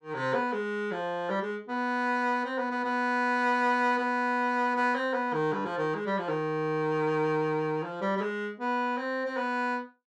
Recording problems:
none

